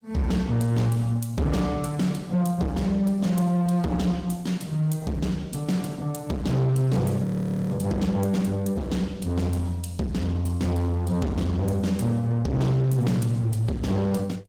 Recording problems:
codec artefacts; Opus, log-spectral distance 2 dB
distortion; hard clipping, signal-to-distortion ratio 7 dB
frozen audio; at 7 s

